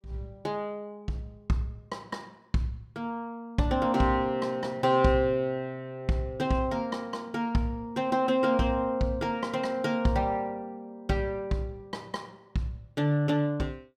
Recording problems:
none

